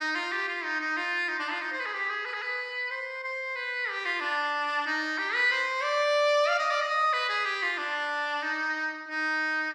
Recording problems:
none

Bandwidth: 14 kHz